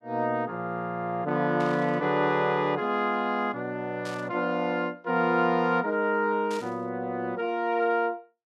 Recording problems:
static burst; at 1.5 s, at 4 s and at 6.5 s; peak -11 dB vs average level

